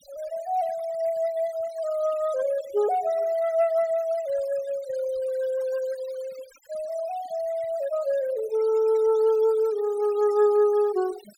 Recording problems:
noise reduction artefacts; signal-to-artefact ratio 21 dB

